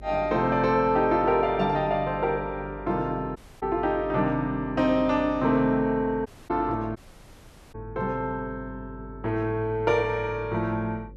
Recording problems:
hum; 50 Hz, harmonics up to 550 Hz, SNR 19 dB
audio cutting out; at 3.5 s, at 6.5 s and at 7 s for 1 s

